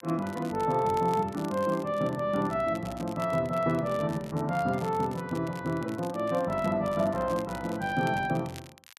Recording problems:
crackle; vinyl, SNR 21 dB

